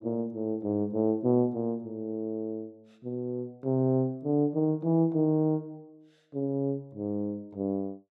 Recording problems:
none

